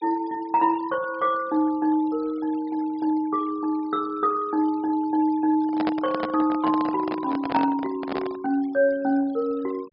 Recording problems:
treble cut off; nothing above 5.5 kHz
noise reduction artefacts; signal-to-artefact ratio 24 dB
microphone handling noise; from 5.5 to 8.5 s; peak 0 dB vs average level

